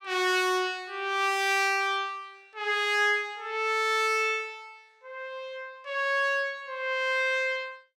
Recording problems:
none

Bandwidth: 17 kHz